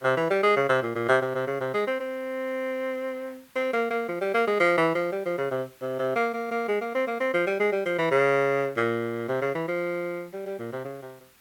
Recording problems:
background hiss; SNR 29 dB

